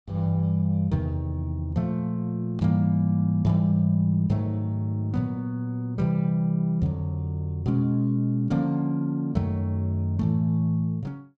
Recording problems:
none

